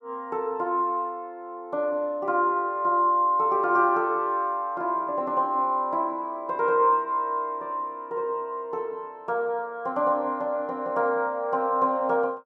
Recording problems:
none

